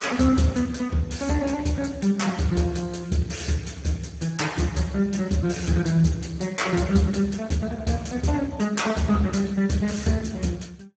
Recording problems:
lossy compression; Speex, log-spectral distance 5 dB, nothing above 7.6 kHz

